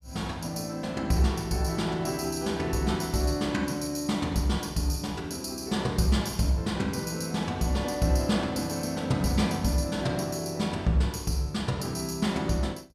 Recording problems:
none

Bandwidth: 15 kHz